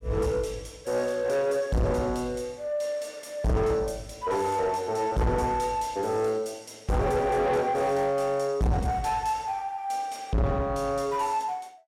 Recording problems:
distortion; soft clipping, signal-to-distortion ratio 7 dB

